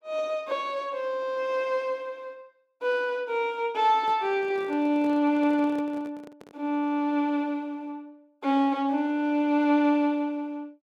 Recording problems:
handling noise; from 4 to 6.5 s; peak -12 dB vs average level

